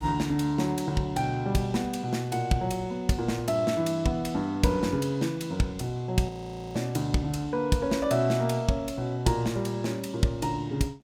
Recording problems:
audio freezing; at 6.5 s

